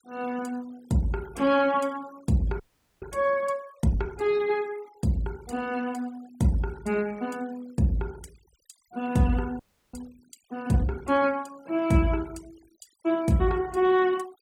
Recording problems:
denoising artefacts; signal-to-artefact ratio 25 dB
frozen audio; at 2.5 s and at 9.5 s

